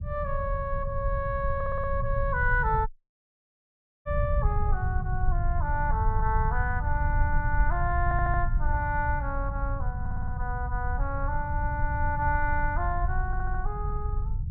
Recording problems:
rumble; below 84 Hz, SNR 0 dB
audio stuttering; 4 times, first at 1.5 s
dropout; at 3 s for 1 s

